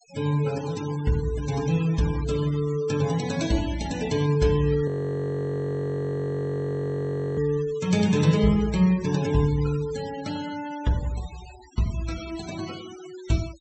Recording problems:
treble cut off; nothing above 7.9 kHz
denoising artefacts; signal-to-artefact ratio 17 dB
audio freezing; at 5 s for 2.5 s

